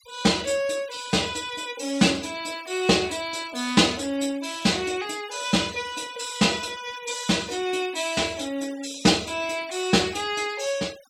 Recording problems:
noise reduction artefacts; signal-to-artefact ratio 19 dB

